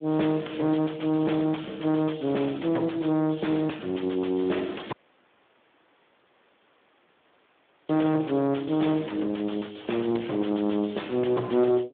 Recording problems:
phone line; 240 Hz to 3.5 kHz, Speex
distorted audio; soft clipping, signal-to-distortion ratio 9 dB
dropout; at 5 s for 3 s

